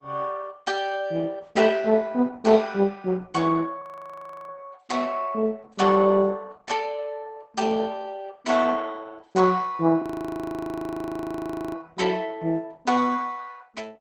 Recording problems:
codec artefacts; Opus, log-spectral distance 4 dB, nothing above 18.3 kHz
audio freezing; at 4 s for 0.5 s and at 10 s for 1.5 s

